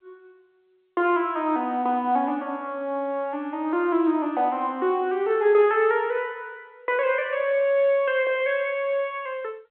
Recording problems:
phone line; 280 Hz to 3.7 kHz, G.711

